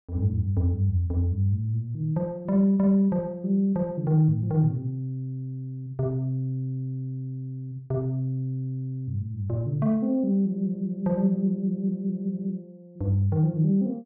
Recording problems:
treble missing; nothing above 5.5 kHz

